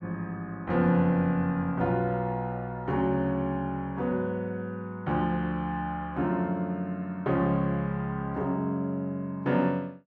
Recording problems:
none

